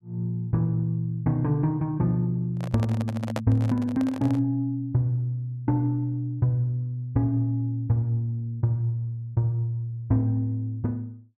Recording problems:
microphone handling noise; from 2.5 to 4.5 s; peak 0 dB vs average level

